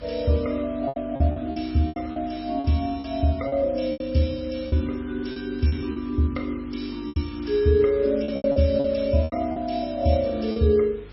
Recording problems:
codec artefacts; MP3, log-spectral distance 4 dB, nothing above 5 kHz
hum; 50 Hz, harmonics up to 550 Hz, SNR 21 dB
background hiss; SNR 25 dB
packet loss; 10% of the sound replaced, filled with repeated pitch periods

